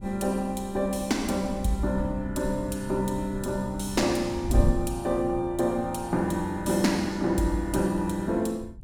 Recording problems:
wind noise; below 94 Hz, SNR 11 dB

